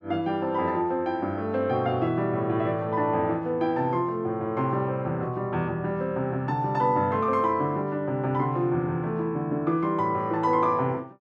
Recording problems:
none

